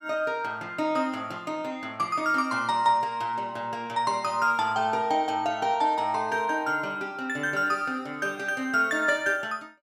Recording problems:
none

